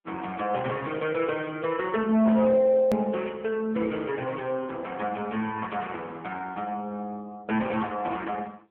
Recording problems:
telephone audio; 240 Hz to 3.3 kHz, AMR-NB
distortion; hard clipping, signal-to-distortion ratio 12 dB
click at an edit; at 3 s

